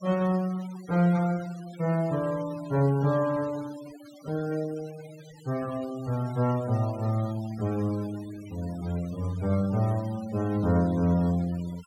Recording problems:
denoising artefacts; signal-to-artefact ratio 20 dB

